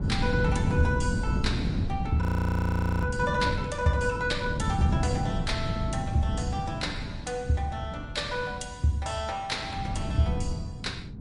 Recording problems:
lossy codec; MP3, log-spectral distance 2 dB, nothing above 20.1 kHz
wind noise; below 200 Hz, SNR 2 dB
frozen audio; at 2 s for 1 s

